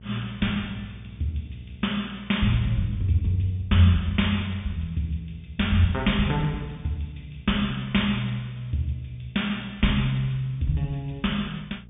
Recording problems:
treble missing; nothing above 3.6 kHz
electrical hum; 60 Hz, harmonics up to 480 Hz, SNR 20 dB

